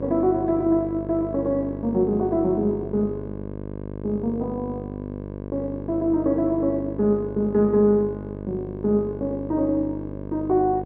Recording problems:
hum; 50 Hz, harmonics up to 1.1 kHz, SNR 10 dB

